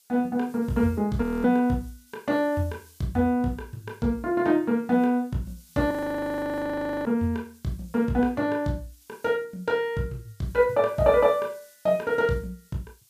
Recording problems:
background hiss; SNR 29 dB
audio freezing; at 1 s and at 6 s for 1 s

